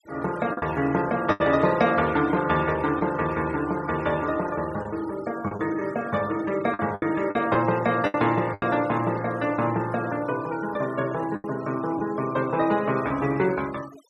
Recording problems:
denoising artefacts; signal-to-artefact ratio 18 dB
lost packets; 5% of the sound replaced, filled with the last packet

